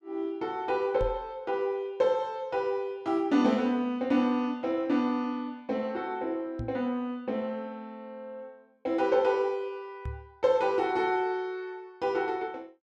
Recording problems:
microphone bump; at 1 s, at 6.5 s and at 10 s; peak -3 dB vs average level

